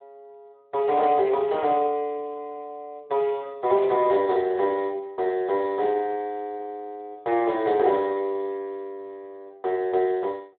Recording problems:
telephone audio; 260 Hz to 3.4 kHz, Speex

